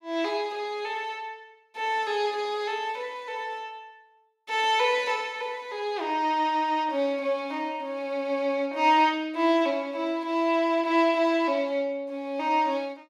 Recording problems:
none

